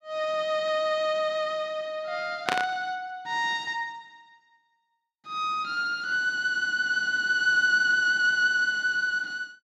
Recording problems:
static burst; at 2.5 s; peak +3 dB vs average level

